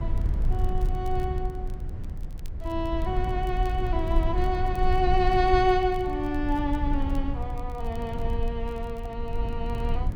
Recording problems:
rumble; below 70 Hz, SNR 2 dB
crackle; vinyl, SNR 30 dB

